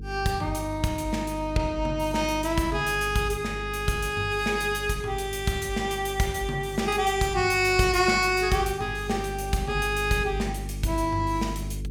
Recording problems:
mains hum; 50 Hz, harmonics up to 450 Hz, SNR 11 dB

